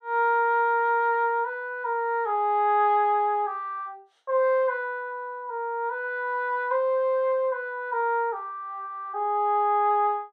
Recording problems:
none

